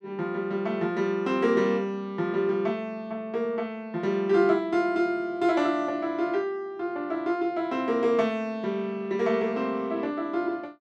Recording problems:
none

